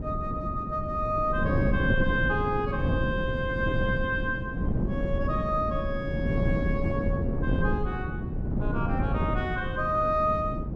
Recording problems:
wind noise; below 230 Hz, SNR 0 dB

